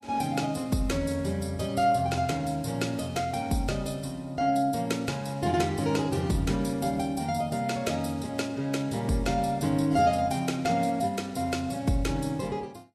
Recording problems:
lossy codec; Vorbis, log-spectral distance 3 dB, nothing above 13.8 kHz

